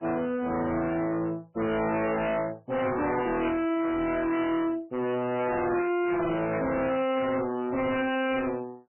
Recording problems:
lossy codec; MP3, then MP3, log-spectral distance 4 dB, nothing above 2.4 kHz
distorted audio; hard clipping, signal-to-distortion ratio 6 dB
static burst; at 3.5 s and at 6.5 s; peak -4 dB vs average level

